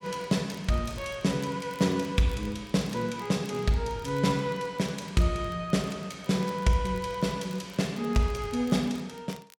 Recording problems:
crackling; vinyl, SNR 26 dB

